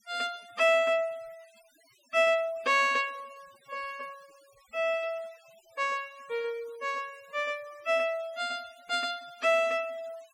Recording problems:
noise reduction artefacts; signal-to-artefact ratio 26 dB

